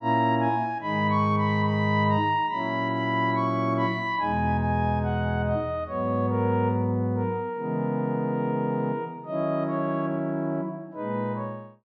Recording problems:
none

